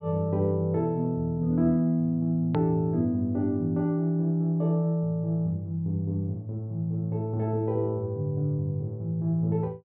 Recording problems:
treble missing; nothing above 4.4 kHz
edit click; at 2.5 s

